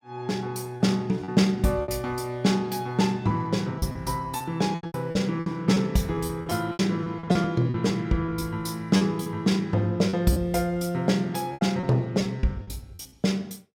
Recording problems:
lost packets; 10% of the sound replaced, filled with repeated pitch periods

